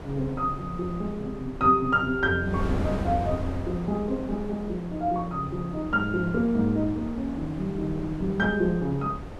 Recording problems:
wind on the microphone; below 440 Hz, SNR 10 dB

